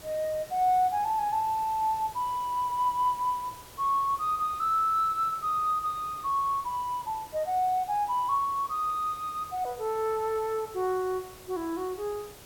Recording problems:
hiss; slope -3 dB per octave, SNR 19 dB

